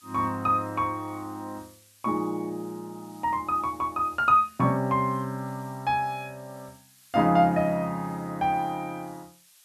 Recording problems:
hiss; slope +5 dB per octave, SNR 27 dB

